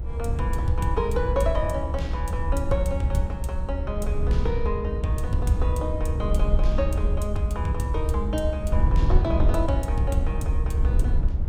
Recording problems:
low-frequency rumble; below 76 Hz, SNR -3 dB

